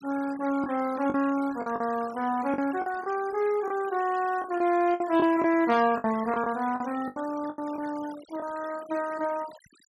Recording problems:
noise reduction artefacts; signal-to-artefact ratio 18 dB
lost packets; 8% of the sound replaced, filled with the last packet

